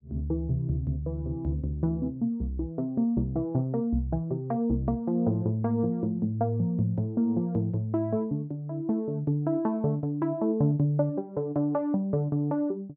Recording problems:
none

